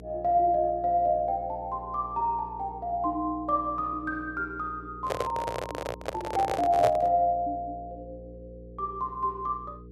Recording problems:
hum; 60 Hz, harmonics up to 480 Hz, SNR 18 dB
microphone handling noise; from 5 to 7 s; peak +3 dB vs average level

